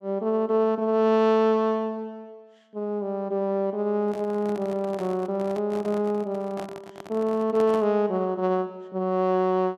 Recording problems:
microphone handling noise; from 4 to 8 s; peak -8 dB vs average level

